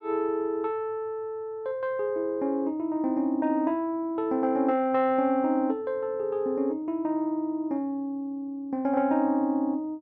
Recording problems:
none

